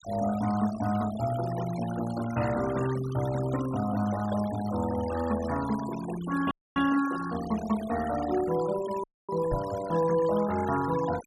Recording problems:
denoising artefacts; signal-to-artefact ratio 13 dB
dropout; at 6.5 s and at 9 s
knock on the microphone; at 9.5 s; peak -2 dB vs average level

